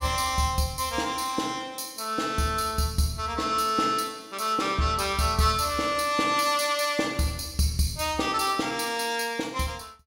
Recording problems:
none

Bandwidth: 16.5 kHz